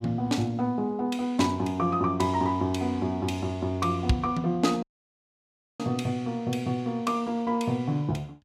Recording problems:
dropout; at 5 s for 1 s

